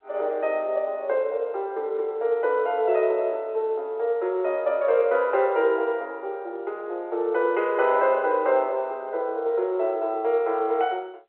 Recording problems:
telephone audio; 300 Hz to 3.2 kHz, G.711

